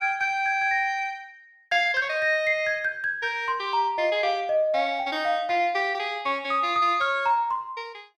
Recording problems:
none

